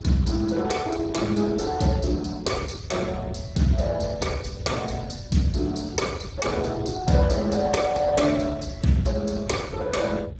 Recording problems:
codec artefacts; Speex, log-spectral distance 3 dB, nothing above 7.3 kHz
rumble; below 140 Hz, SNR 12 dB

